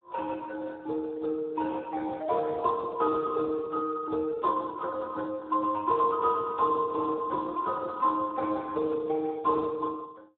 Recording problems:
telephone audio; 370 Hz to 2.2 kHz, Speex

